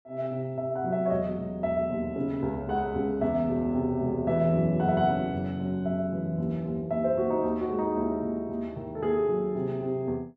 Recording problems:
none

